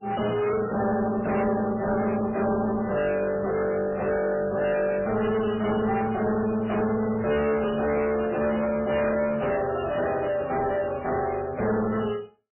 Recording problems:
lossy compression; MP3, then AAC, log-spectral distance 5 dB, nothing above 2.7 kHz
distorted audio; soft clipping, signal-to-distortion ratio 7 dB

